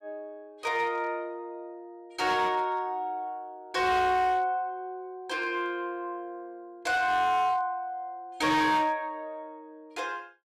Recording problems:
distorted audio; hard clipping, signal-to-distortion ratio 11 dB

